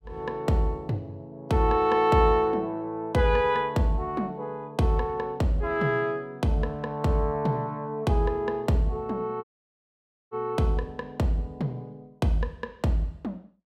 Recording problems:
dropout; at 9.5 s for 1 s

